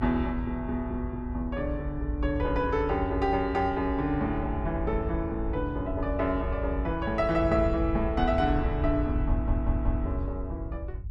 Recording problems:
rumble; below 82 Hz, SNR 4 dB
audio stuttering; at 9.5 s

